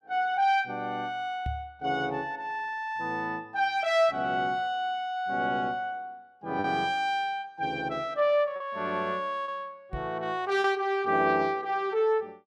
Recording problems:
lost packets; 1.7% of the sound replaced, filled with repeated pitch periods
microphone bump; at 1.5 s and at 10 s; peak -2 dB vs average level

